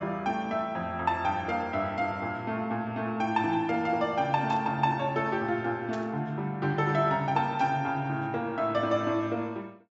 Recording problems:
low-pass filter; nothing above 8 kHz
burst of static; at 4.5 s, at 6 s and at 7.5 s; peak -13 dB vs average level

